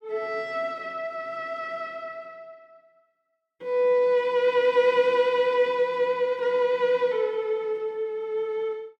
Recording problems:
none

